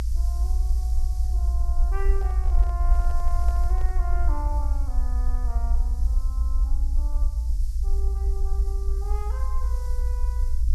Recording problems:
hiss; SNR 11 dB
rumble; below 58 Hz, SNR -15 dB
handling noise; from 2 to 4 s; peak -2 dB vs average level

